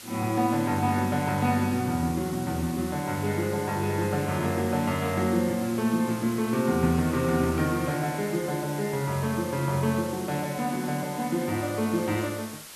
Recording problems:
hiss; slope 0 dB per octave, SNR 15 dB

